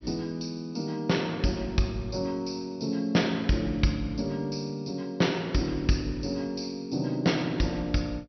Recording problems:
treble missing; nothing above 6 kHz

